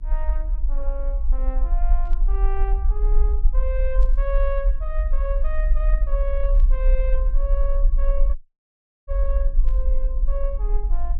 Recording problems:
hum; 60 Hz, harmonics up to 360 Hz, SNR 15 dB
low-frequency rumble; below 42 Hz, strongest tone 22 Hz, SNR -10 dB
static burst; 4 times, first at 2 s; peak -13 dB vs average level
dropout; at 8.5 s for 0.5 s

